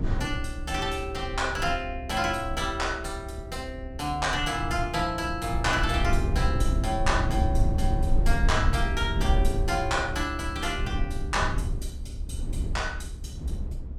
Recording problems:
rumble; below 82 Hz, SNR 2 dB

